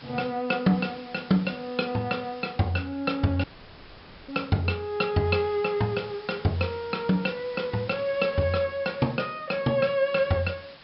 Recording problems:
treble missing; nothing above 5.3 kHz
background hiss; SNR 20 dB
audio cutting out; at 3.5 s for 1 s

